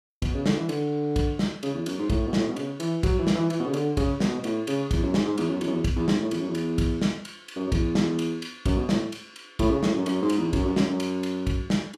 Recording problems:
none

